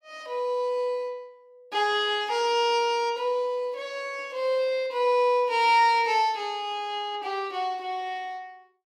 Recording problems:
none

